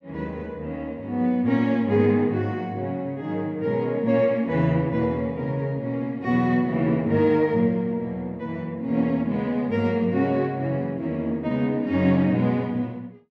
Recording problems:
none

